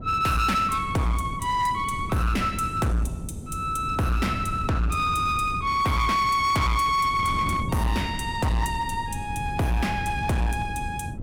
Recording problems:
distortion; hard clipping, signal-to-distortion ratio 8 dB
wind noise; below 210 Hz, SNR 10 dB

